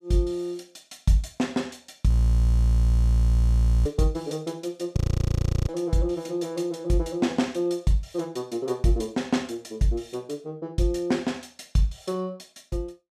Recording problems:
audio freezing; at 2 s for 2 s and at 5 s for 0.5 s

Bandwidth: 14.5 kHz